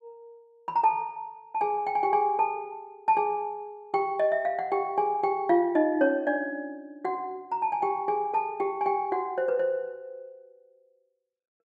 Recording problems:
none

